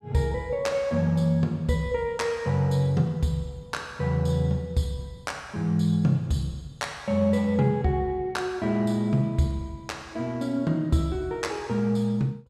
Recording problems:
none

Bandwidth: 14 kHz